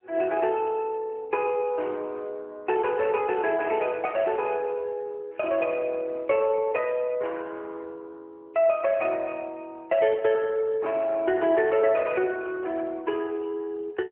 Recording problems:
phone line; 300 Hz to 3.3 kHz, AMR-NB

